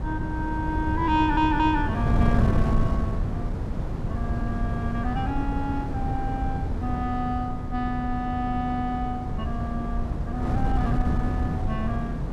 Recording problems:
wind noise; below 170 Hz, SNR -1 dB
stutter; at 1 s

